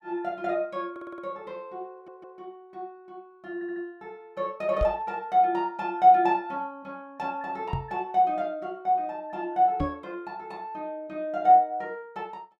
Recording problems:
stutter; at 1 s, at 2 s and at 3.5 s
microphone bump; at 5 s, at 7.5 s and at 10 s; peak +1 dB vs average level

